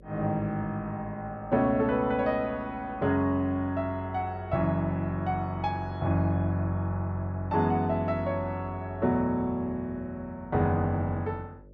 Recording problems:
electrical hum; 50 Hz, harmonics up to 600 Hz, SNR 24 dB

